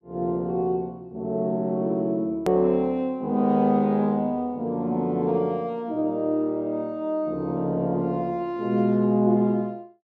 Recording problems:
click at an edit; at 2.5 s

